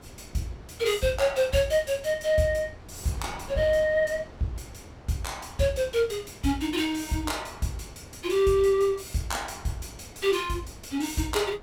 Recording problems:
wind on the microphone; below 730 Hz, SNR 21 dB

